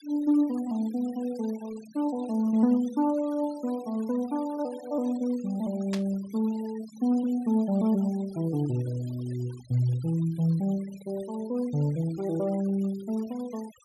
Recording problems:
denoising artefacts; signal-to-artefact ratio 23 dB
burst of static; at 6 s; peak -4 dB vs average level

